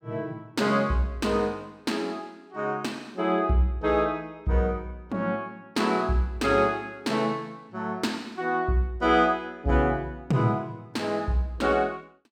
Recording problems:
none

